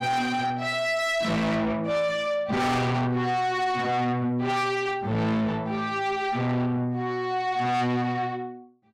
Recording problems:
distorted audio; soft clipping, signal-to-distortion ratio 7 dB

